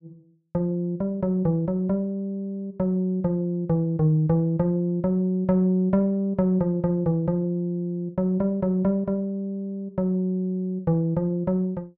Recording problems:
none

